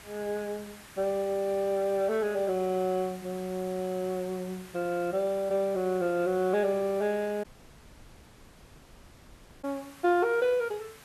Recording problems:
hiss; SNR 19 dB
audio cutting out; at 7.5 s for 2 s

